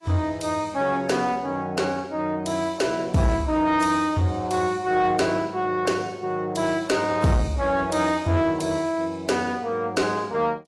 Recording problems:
lossy codec; AAC, log-spectral distance 3 dB, nothing above 11.3 kHz
distorted audio; soft clipping, signal-to-distortion ratio 12 dB

